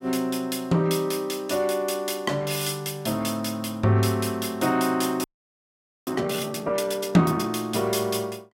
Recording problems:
frozen audio; at 5 s for 1 s

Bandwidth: 16.5 kHz